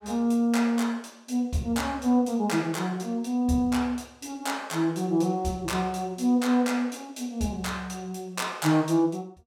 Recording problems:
none

